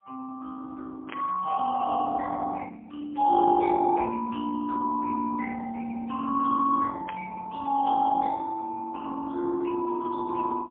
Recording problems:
telephone audio; 260 Hz to 2 kHz, AMR-NB, then MP3
static burst; at 1 s and at 7 s; peak -7 dB vs average level

